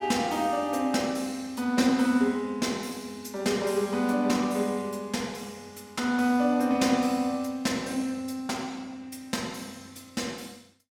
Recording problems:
none

